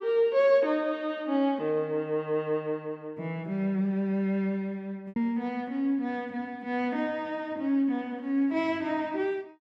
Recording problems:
lost packets; 0.8% of the sound replaced, filled with repeated pitch periods

